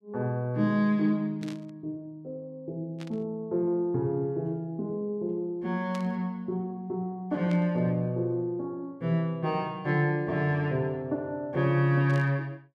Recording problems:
static burst; 5 times, first at 1.5 s; peak -11 dB vs average level

